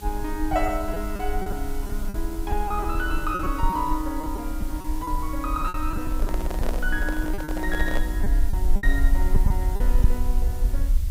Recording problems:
electrical hum; 50 Hz, harmonics up to 1.2 kHz, SNR 21 dB
hiss; slope +2 dB per octave, SNR 14 dB
low-frequency rumble; below 48 Hz, strongest tone 20 Hz, SNR -1 dB
packet loss; 9% of the sound replaced, filled with repeated pitch periods
handling noise; from 6 to 8 s; peak +2 dB vs average level

